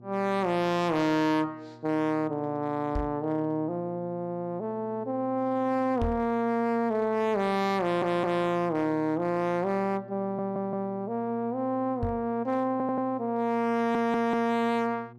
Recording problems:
distortion; hard clipping, signal-to-distortion ratio 11 dB
hum; 60 Hz, harmonics up to 840 Hz, SNR 21 dB
microphone bump; at 3 s, at 6 s and at 12 s; peak +1 dB vs average level
audio stuttering; 4 times, first at 8 s

